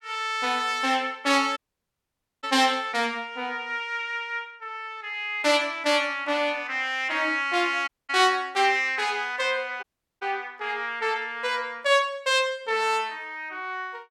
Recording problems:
audio cutting out; at 1.5 s for 1 s, at 8 s and at 10 s

